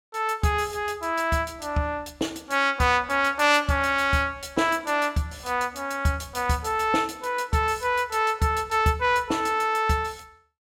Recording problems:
none

